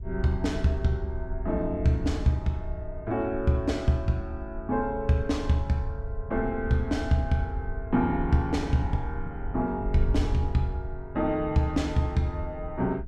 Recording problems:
wind on the microphone; below 76 Hz, SNR 9 dB

